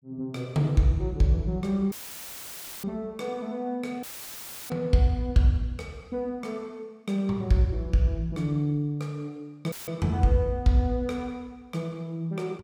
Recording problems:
audio cutting out; at 2 s for 1 s, at 4 s for 0.5 s and at 9.5 s; filled with static

